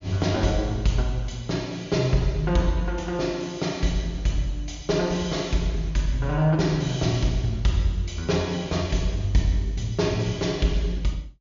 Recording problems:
treble cut off; nothing above 7.1 kHz

